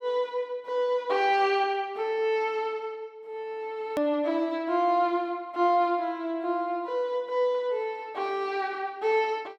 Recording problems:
hard cut with a click; at 4 s

